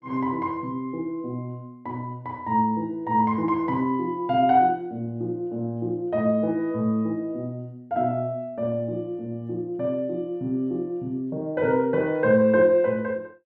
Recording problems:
none

